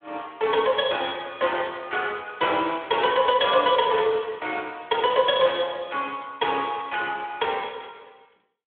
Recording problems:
phone line; 320 Hz to 3.6 kHz, Speex

